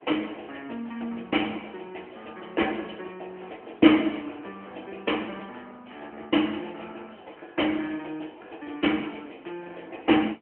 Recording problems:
phone line; 220 Hz to 3.1 kHz, AMR-NB

